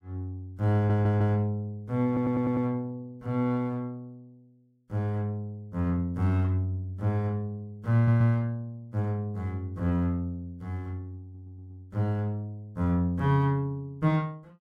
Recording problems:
audio stuttering; 4 times, first at 0.5 s

